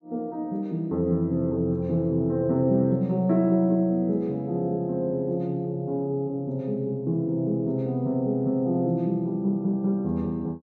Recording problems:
none

